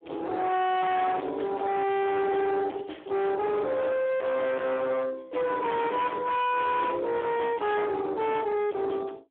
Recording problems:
telephone audio; 300 Hz to 3.3 kHz, Speex
distorted audio; hard clipping, signal-to-distortion ratio 6 dB

